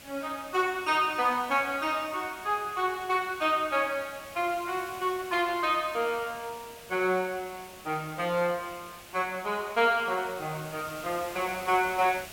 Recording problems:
hiss; SNR 17 dB

